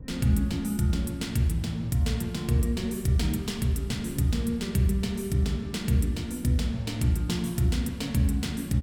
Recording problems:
hum; 50 Hz, harmonics up to 1.5 kHz, SNR 32 dB
wind noise; below 130 Hz, SNR 20 dB

